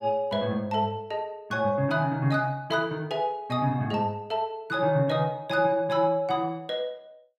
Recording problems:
none

